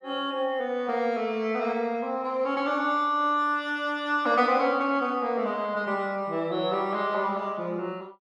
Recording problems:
none

